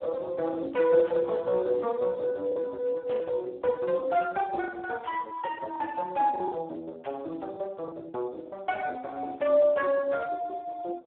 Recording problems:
telephone audio; 280 Hz to 2.5 kHz, Speex
packet loss; 3% of the sound replaced, filled with the last packet
burst of static; 4 times, first at 1 s; peak -15 dB vs average level

